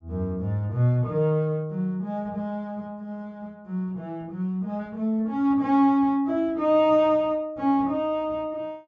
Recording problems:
treble cut off; nothing above 8 kHz

